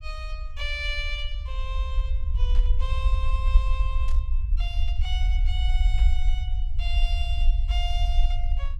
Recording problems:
low-frequency rumble; below 54 Hz, SNR -9 dB
static burst; at 2.5 s, at 4 s and at 6 s; peak -8 dB vs average level

